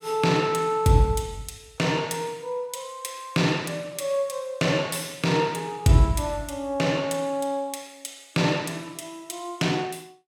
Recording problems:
none

